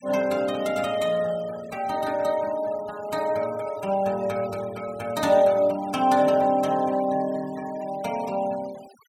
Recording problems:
denoising artefacts; signal-to-artefact ratio 20 dB

